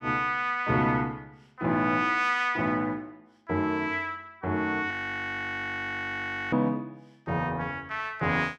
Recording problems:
frozen audio; at 5 s for 1.5 s

